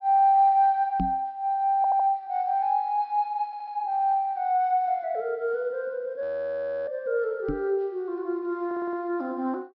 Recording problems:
low-pass filter; nothing above 5.5 kHz
microphone bump; at 1 s and at 7.5 s; peak +1 dB vs average level
stutter; at 2 s, at 3.5 s and at 8.5 s
frozen audio; at 6 s for 0.5 s

